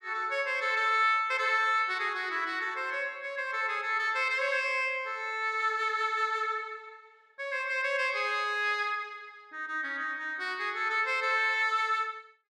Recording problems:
none

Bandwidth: 13 kHz